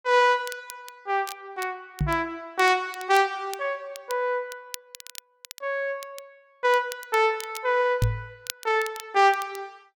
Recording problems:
crackle; vinyl, SNR 17 dB
microphone thump; at 2 s and at 8 s; peak +5 dB vs average level

